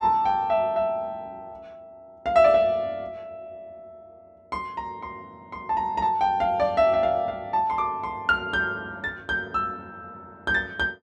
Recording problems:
none

